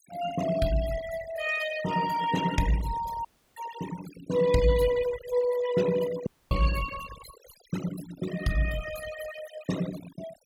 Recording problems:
noise reduction artefacts; signal-to-artefact ratio 10 dB
audio cutting out; at 3.5 s and at 6.5 s

